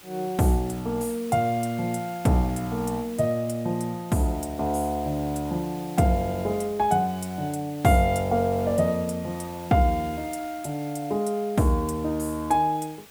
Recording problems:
hiss; slope -1 dB per octave, SNR 20 dB

